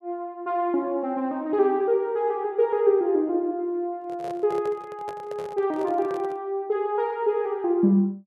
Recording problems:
handling noise; from 4 to 6.5 s; peak -10 dB vs average level

